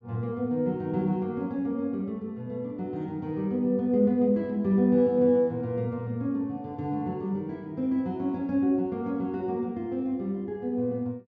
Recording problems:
treble missing; nothing above 8 kHz

